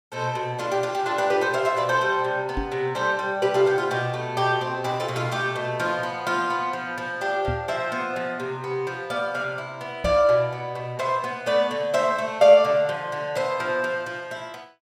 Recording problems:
microphone bump; at 2.5 s, at 7.5 s and at 10 s; peak -2 dB vs average level

